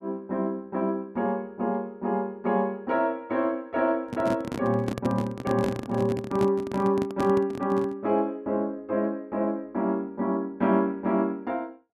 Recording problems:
handling noise; from 4 to 8 s; peak +1 dB vs average level

